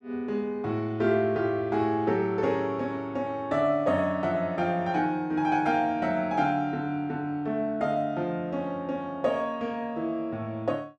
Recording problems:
none

